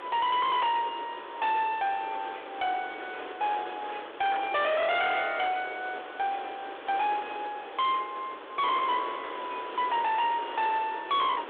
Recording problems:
phone line; 300 Hz to 3.6 kHz, G.726
distortion; hard clipping, uneven, signal-to-distortion ratio 5 dB
background hiss; SNR 11 dB
handling noise; from 4 to 5.5 s; peak -6 dB vs average level

